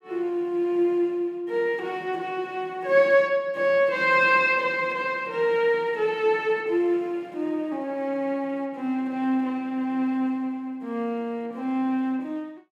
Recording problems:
none

